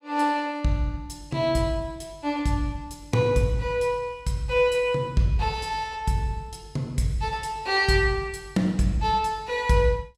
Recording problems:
none

